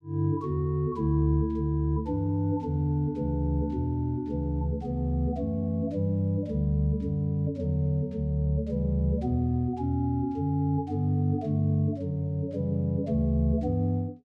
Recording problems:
none

